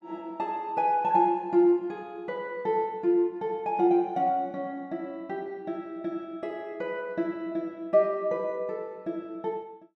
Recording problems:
none

